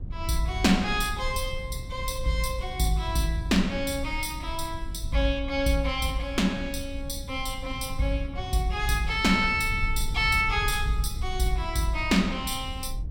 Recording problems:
rumble; below 78 Hz, SNR 9 dB

